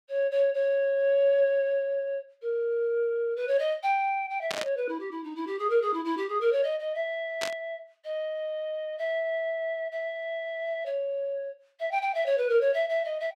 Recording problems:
static burst; at 4.5 s and at 7.5 s; peak +1 dB vs average level

